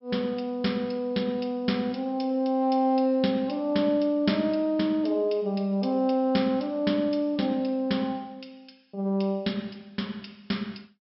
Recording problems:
low-pass filter; nothing above 5.5 kHz

